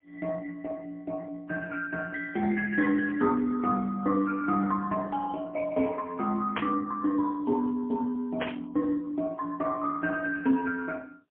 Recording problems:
telephone audio; 240 Hz to 3.8 kHz, AMR-NB, then MP3
static burst; at 6.5 s and at 8.5 s; peak +1 dB vs average level

